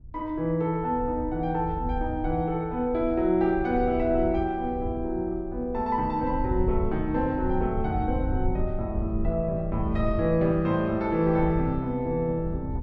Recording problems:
wind on the microphone; below 88 Hz, SNR 8 dB

